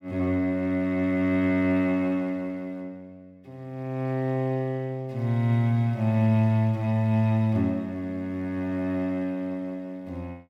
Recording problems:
none

